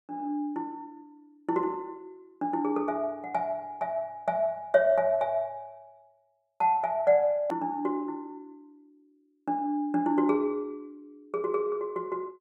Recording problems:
click at an edit; at 7.5 s

